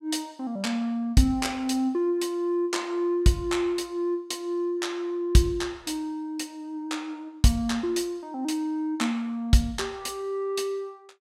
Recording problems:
none

